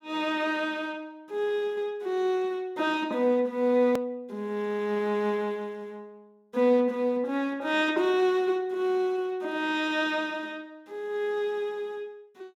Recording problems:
edit click; at 4 s

